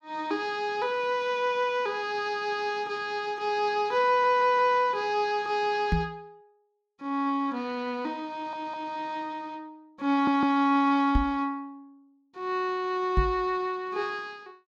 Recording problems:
stutter; at 4 s, at 8.5 s and at 10 s
microphone thump; at 6 s, at 11 s and at 13 s; peak +5 dB vs average level

